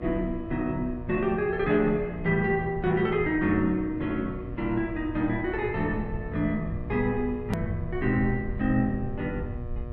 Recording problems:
electrical hum; 60 Hz, harmonics up to 1.9 kHz, SNR 15 dB
rumble; below 100 Hz, SNR 11 dB
click at an edit; at 7.5 s

